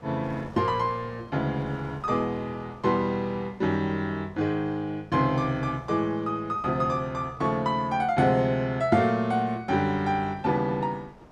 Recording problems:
wind on the microphone; below 850 Hz, SNR 22 dB

